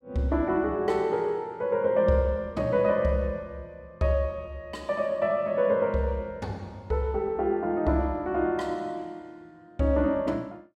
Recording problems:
none

